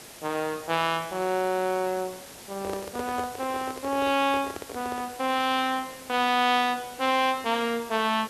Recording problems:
hiss; slope -3 dB per octave, SNR 16 dB
microphone handling noise; from 2.5 to 5 s; peak -5 dB vs average level

